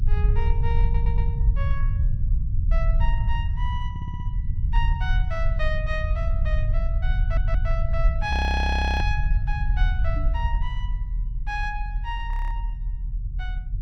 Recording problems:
low-frequency rumble; below 68 Hz, SNR -7 dB
stutter; at 1 s, at 4 s and at 7 s
audio freezing; at 8.5 s for 0.5 s and at 12 s
microphone bump; at 10 s; peak -4 dB vs average level

